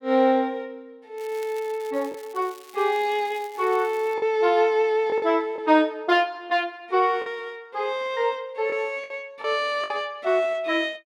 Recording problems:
packet loss; 3% of the sound replaced, filled with the last packet
crackle; from 1 to 4 s; loose cable, SNR 24 dB

